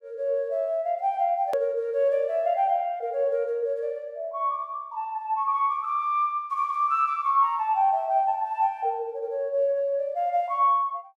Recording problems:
hard cut with a click; at 1.5 s

